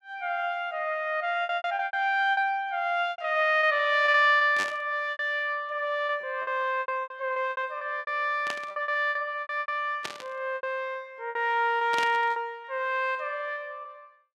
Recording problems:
lost packets; 14% of the sound replaced, filled with repeated pitch periods
burst of static; 4 times, first at 4.5 s; peak -2 dB vs average level

